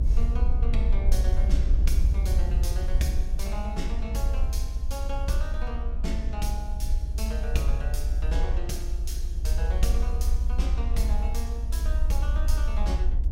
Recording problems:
rumble; below 60 Hz, strongest tone 24 Hz, SNR -8 dB

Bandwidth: 16.5 kHz